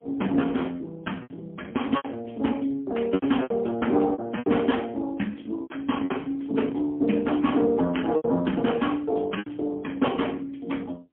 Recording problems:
phone line; 150 Hz to 3.3 kHz, AMR-NB, then MP3
lost packets; 7% of the sound replaced, filled with repeated pitch periods

